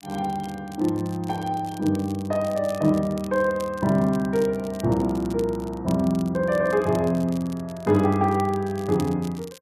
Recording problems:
crackle; vinyl, SNR 22 dB

